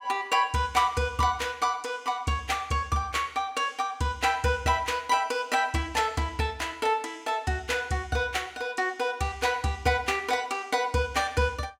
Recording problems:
none

